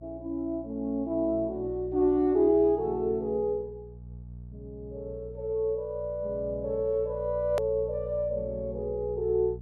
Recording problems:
electrical hum; 60 Hz, harmonics up to 420 Hz, SNR 16 dB
hard cut with a click; at 7.5 s

